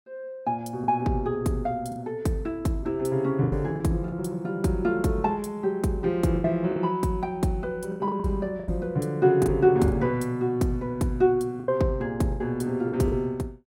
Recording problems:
lost packets; 7% of the sound replaced, filled with the last packet

